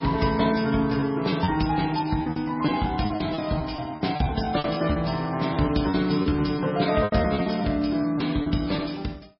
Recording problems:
codec artefacts; MP3, log-spectral distance 5 dB, nothing above 5 kHz
packet loss; 12% of the sound replaced, filled with repeated pitch periods

